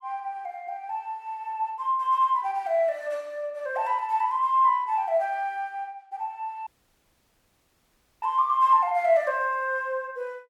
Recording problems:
audio cutting out; at 6.5 s for 1.5 s

